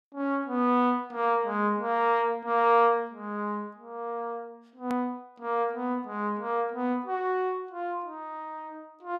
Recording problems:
hard cut with a click; at 5 s

